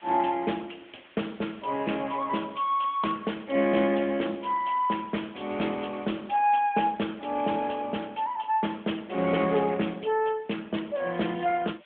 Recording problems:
phone line; 170 Hz to 3.5 kHz, AMR-NB
background hiss; SNR 26 dB

